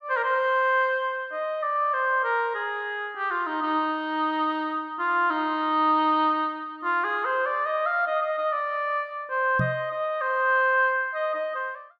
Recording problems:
knock on the microphone; at 9.5 s; peak +1 dB vs average level

